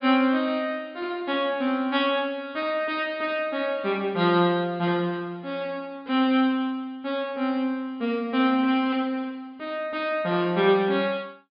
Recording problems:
low-pass filter; nothing above 5.5 kHz

